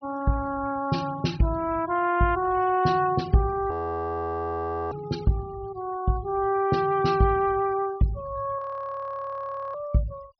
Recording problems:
treble cut off; nothing above 5.9 kHz
noise reduction artefacts; signal-to-artefact ratio 22 dB
frozen audio; at 3.5 s for 1 s and at 8.5 s for 1 s

